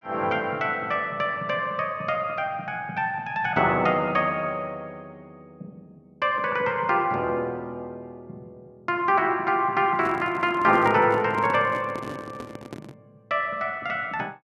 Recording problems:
microphone handling noise; from 10 to 13 s; peak -5 dB vs average level

